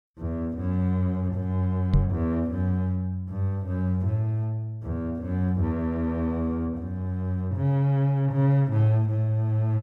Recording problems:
microphone bump; at 2 s; peak +7 dB vs average level

